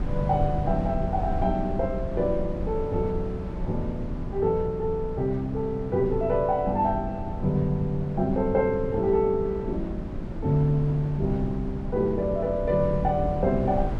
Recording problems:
rumble; below 140 Hz, SNR 8 dB

